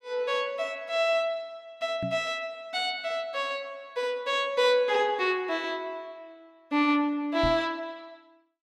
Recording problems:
microphone thump; at 2 s and at 7.5 s; peak -2 dB vs average level

